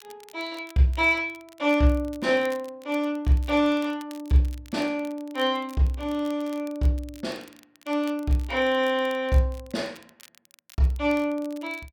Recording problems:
crackle; vinyl, SNR 26 dB

